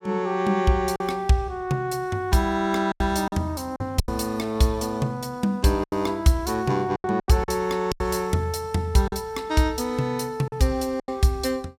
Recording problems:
lost packets; 7% of the sound replaced, filled with silence

